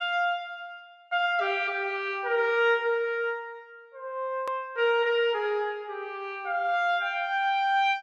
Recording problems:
click at an edit; at 4.5 s

